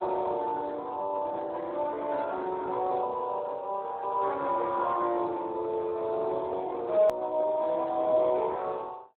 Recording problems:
phone line; 300 Hz to 2.1 kHz, Speex
hard cut with a click; at 7 s

